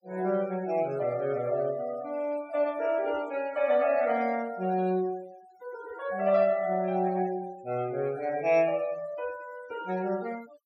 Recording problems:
denoising artefacts; signal-to-artefact ratio 20 dB

